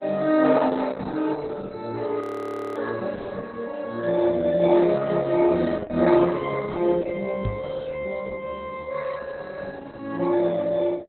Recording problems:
lossy compression; Opus, log-spectral distance 4 dB, nothing above 13.3 kHz
audio freezing; at 2 s for 0.5 s
microphone bump; at 7.5 s; peak +2 dB vs average level

